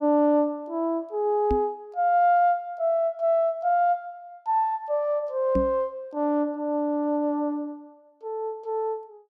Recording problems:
microphone thump; at 1.5 s and at 5.5 s; peak +1 dB vs average level

